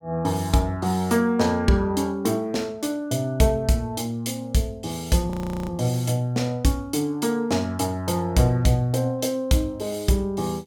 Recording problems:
audio freezing; at 5.5 s

